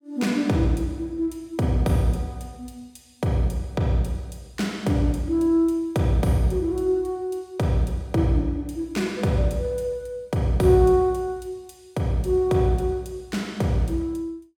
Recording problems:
none

